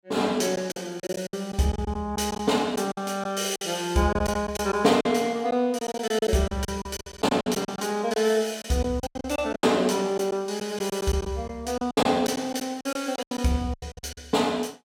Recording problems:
packet loss; 13% of the sound replaced, filled with silence

